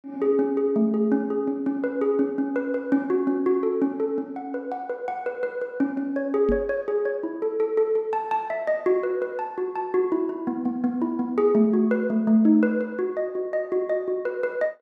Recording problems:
knock on the microphone; at 6.5 s; peak +2 dB vs average level

